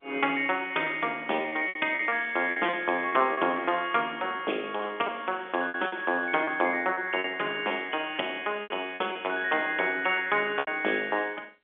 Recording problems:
phone line; 280 Hz to 3.5 kHz, G.711
lost packets; 11% of the sound replaced, filled with repeated pitch periods
crackle; from 1.5 to 4 s; loose cable, SNR 27 dB

